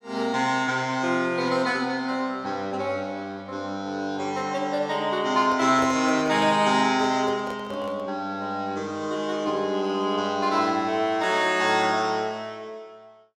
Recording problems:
handling noise; from 5.5 to 8 s; peak -3 dB vs average level

